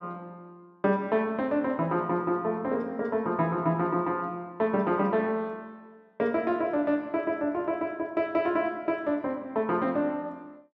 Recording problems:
none

